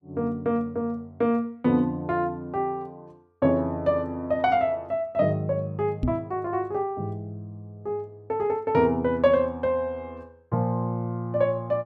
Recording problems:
knock on the microphone; at 6 s; peak +4 dB vs average level

